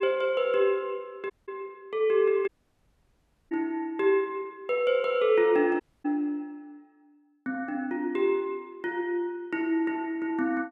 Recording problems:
audio cutting out; at 1.5 s, at 2.5 s for 1 s and at 6 s

